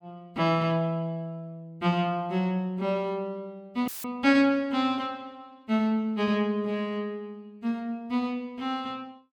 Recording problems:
dropout; at 4 s; filled with static

